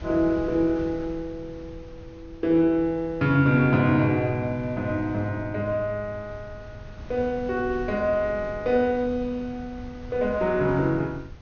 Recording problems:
treble cut off; nothing above 6.5 kHz
wind on the microphone; below 150 Hz, SNR 18 dB

